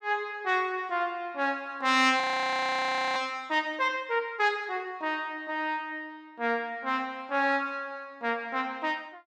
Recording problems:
frozen audio; at 2 s for 1 s

